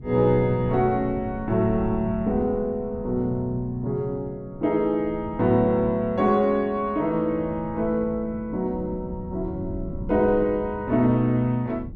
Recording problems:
wind noise; below 180 Hz, SNR 14 dB

